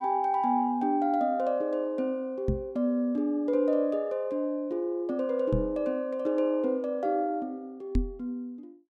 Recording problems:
knock on the microphone; at 2.5 s, at 5.5 s and at 8 s; peak +5 dB vs average level

